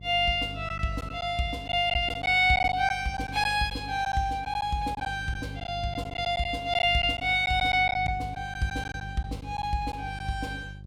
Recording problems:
hum; 50 Hz, harmonics up to 400 Hz, SNR 14 dB
lost packets; 7% of the sound replaced, filled with silence

